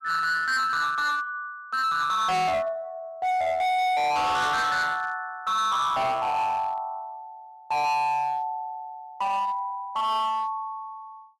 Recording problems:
distortion; hard clipping, uneven, signal-to-distortion ratio 7 dB

